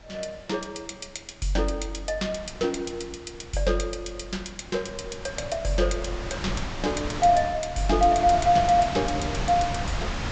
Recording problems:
treble missing; nothing above 8 kHz
wind on the microphone; below 1.5 kHz, SNR 7 dB

